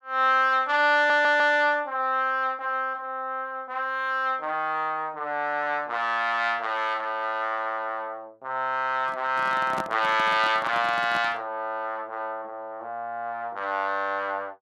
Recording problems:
audio stuttering; at 1 s
handling noise; from 9 to 11 s; peak -3 dB vs average level

